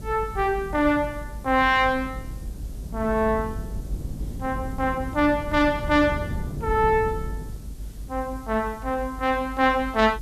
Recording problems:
background hiss; slope +1 dB per octave, SNR 28 dB
low-frequency rumble; below 150 Hz, SNR 11 dB

